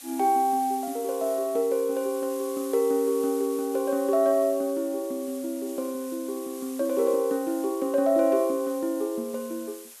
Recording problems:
background hiss; slope +2 dB per octave, SNR 17 dB

